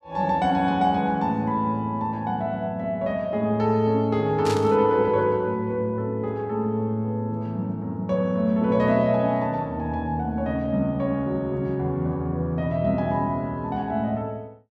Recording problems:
burst of static; at 4.5 s; peak -4 dB vs average level

